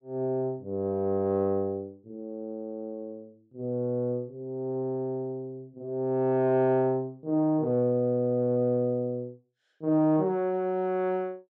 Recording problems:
none

